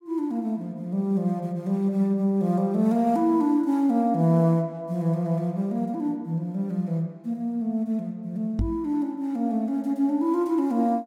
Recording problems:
microphone bump; at 8.5 s; peak +3 dB vs average level

